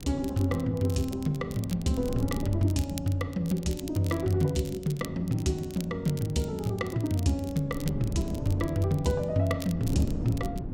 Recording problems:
hum; 60 Hz, harmonics up to 1.3 kHz, SNR 32 dB
wind noise; below 250 Hz, SNR 10 dB
crackle; vinyl, SNR 18 dB

